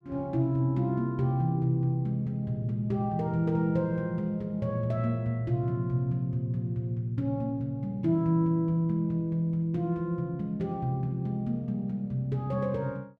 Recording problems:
none

